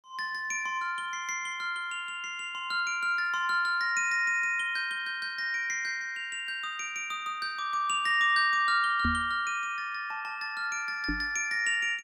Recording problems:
knock on the microphone; at 9 s and at 11 s; peak +1 dB vs average level

